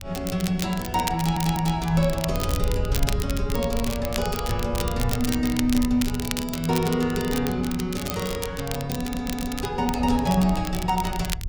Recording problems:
wind on the microphone; below 82 Hz, SNR 8 dB
crackle; vinyl, SNR 9 dB
stutter; at 1 s and at 9 s

